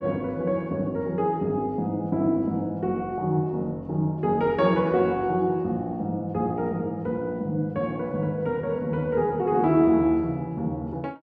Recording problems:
none

